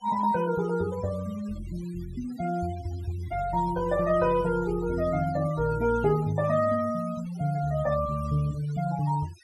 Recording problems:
denoising artefacts; signal-to-artefact ratio 18 dB

